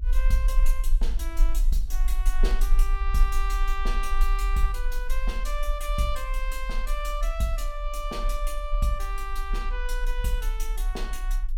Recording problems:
rumble; below 38 Hz, SNR -4 dB

